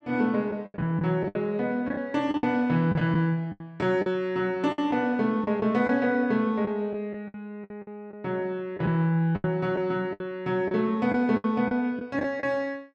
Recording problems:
packet loss; 10% of the sound replaced, filled with the last packet

